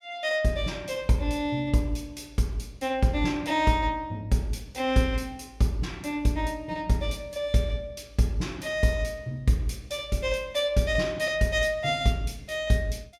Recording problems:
none

